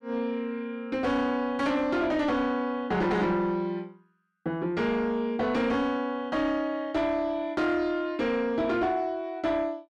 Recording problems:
distorted audio; soft clipping, signal-to-distortion ratio 11 dB

